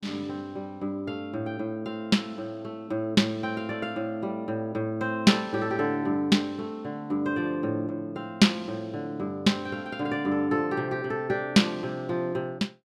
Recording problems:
none

